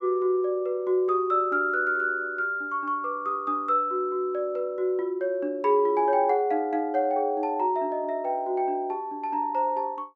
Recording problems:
none

